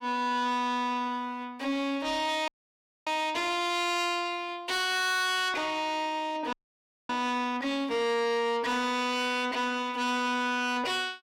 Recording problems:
distorted audio; soft clipping, signal-to-distortion ratio 11 dB
audio freezing; at 2.5 s for 0.5 s and at 6.5 s for 0.5 s

